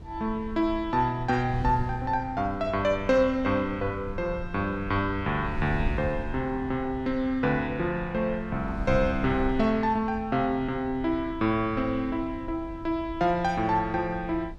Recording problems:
wind noise; below 96 Hz, SNR 12 dB

